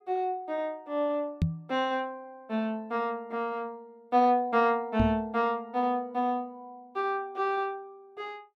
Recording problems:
microphone thump; at 1.5 s and at 5 s; peak +6 dB vs average level

